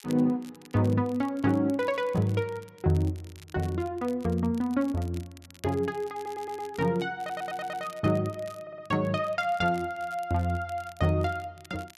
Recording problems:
crackle; vinyl, SNR 24 dB
audio stuttering; at 6 s, at 7 s and at 8.5 s

